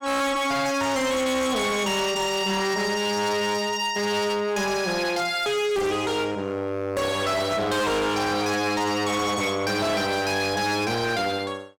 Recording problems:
distortion; hard clipping, signal-to-distortion ratio 6 dB

